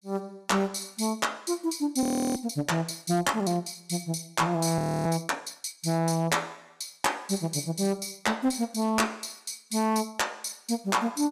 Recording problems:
distortion; hard clipping, signal-to-distortion ratio 11 dB
frozen audio; at 2 s and at 5 s

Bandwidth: 14.5 kHz